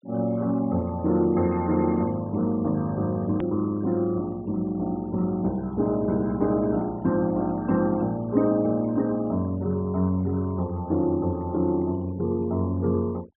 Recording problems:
low-pass filter; nothing above 3.6 kHz
denoising artefacts; signal-to-artefact ratio 27 dB
hard cut with a click; at 3.5 s

